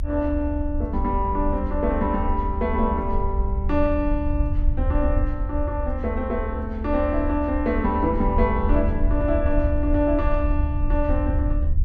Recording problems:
rumble; below 74 Hz, SNR 2 dB

